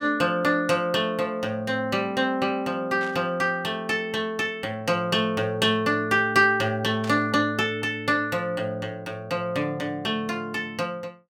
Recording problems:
static burst; at 3 s and at 7 s; peak -10 dB vs average level

